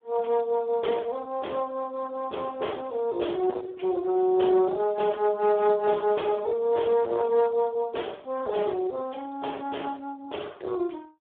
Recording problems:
phone line; 300 Hz to 2.2 kHz, Speex
distorted audio; soft clipping, signal-to-distortion ratio 10 dB

